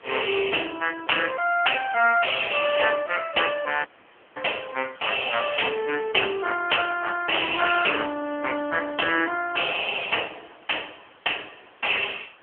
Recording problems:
phone line; 240 Hz to 3.2 kHz, AMR-NB
hiss; SNR 27 dB
audio cutting out; at 4 s for 0.5 s

